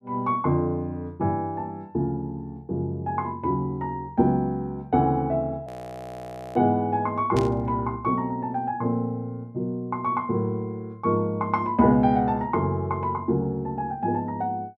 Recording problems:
audio freezing; at 5.5 s for 1 s
static burst; at 7.5 s; peak -6 dB vs average level

